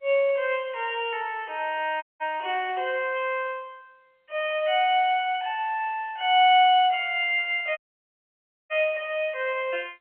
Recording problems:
phone line; 340 Hz to 3.3 kHz, G.711
dropout; at 2 s and at 8 s for 1 s

